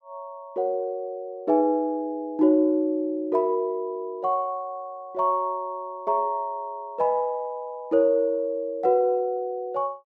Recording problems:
none

